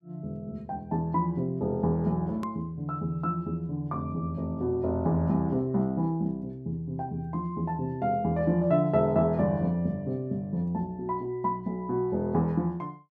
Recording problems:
click at an edit; at 2.5 s

